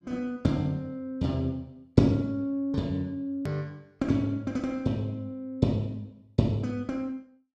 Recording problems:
edit click; at 3.5 s

